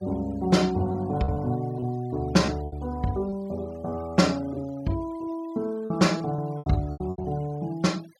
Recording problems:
noise reduction artefacts; signal-to-artefact ratio 24 dB
packet loss; 7% of the sound replaced, filled with repeated pitch periods

